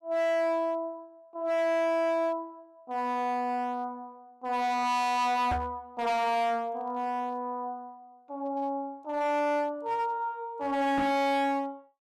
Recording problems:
distorted audio; hard clipping, uneven, signal-to-distortion ratio 6 dB
microphone thump; at 5.5 s and at 11 s; peak 0 dB vs average level

